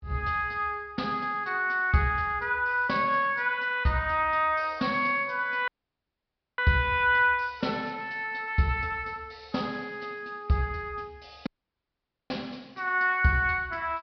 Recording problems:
treble cut off; nothing above 5.5 kHz
audio cutting out; at 5.5 s for 1 s and at 11 s for 1 s

